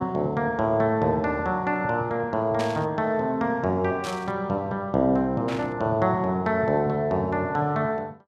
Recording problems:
burst of static; at 2.5 s, at 4 s and at 5.5 s; peak -6 dB vs average level

